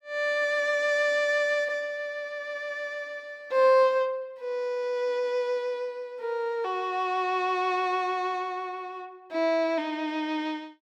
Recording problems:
none

